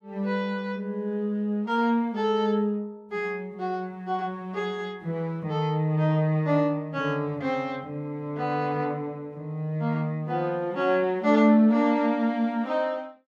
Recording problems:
none

